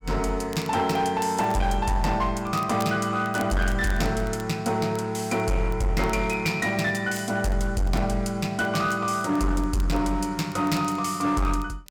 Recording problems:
distortion; hard clipping, uneven, signal-to-distortion ratio 11 dB
crackling; vinyl, SNR 23 dB

